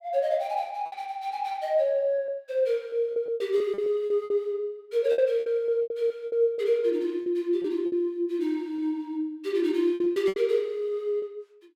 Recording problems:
packet loss; 10% of the sound replaced, filled with repeated pitch periods

